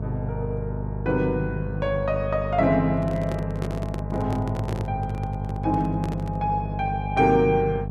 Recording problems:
mains hum; 50 Hz, harmonics up to 900 Hz, SNR 5 dB
handling noise; from 3 to 6.5 s; peak -4 dB vs average level

